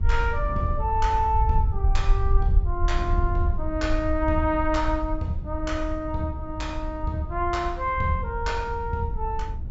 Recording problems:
treble missing; nothing above 7.6 kHz
rumble; below 68 Hz, SNR 2 dB
wind on the microphone; below 230 Hz, SNR 15 dB

